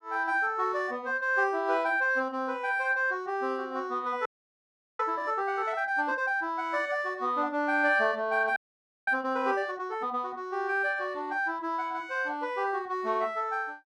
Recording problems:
audio freezing; at 4.5 s for 0.5 s and at 8.5 s for 0.5 s

